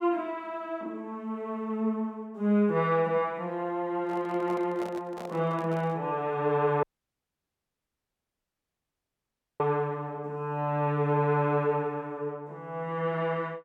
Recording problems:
handling noise; from 4 to 6 s; peak -8 dB vs average level
dropout; at 7 s for 3 s

